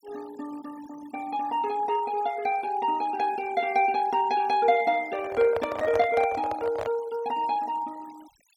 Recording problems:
denoising artefacts; signal-to-artefact ratio 21 dB
microphone handling noise; from 5 to 7 s; peak -2 dB vs average level

